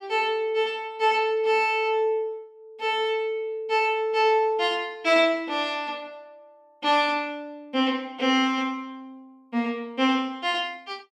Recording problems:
none

